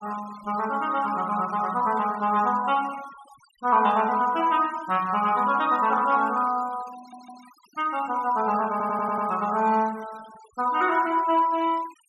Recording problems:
noise reduction artefacts; signal-to-artefact ratio 22 dB
audio stuttering; at 7 s and at 8.5 s

